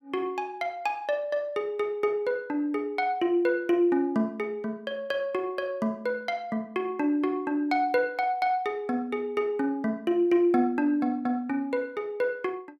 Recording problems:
none

